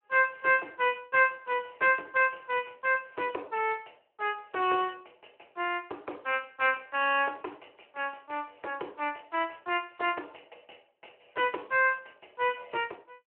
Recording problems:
telephone audio; 300 Hz to 3.1 kHz, Speex

